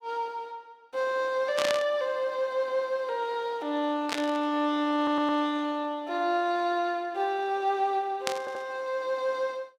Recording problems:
static burst; at 1.5 s, at 4 s and at 8.5 s; peak +3 dB vs average level
audio stuttering; at 5 s and at 8.5 s

